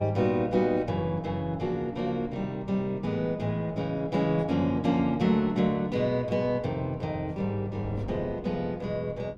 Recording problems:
wind on the microphone; below 340 Hz, SNR 17 dB

